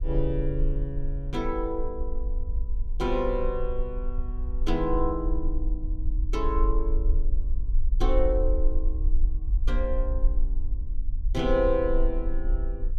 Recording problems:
rumble; below 44 Hz, strongest tone 20 Hz, SNR 0 dB

